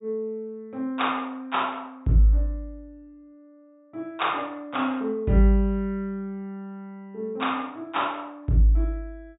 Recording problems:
treble cut off; nothing above 4 kHz

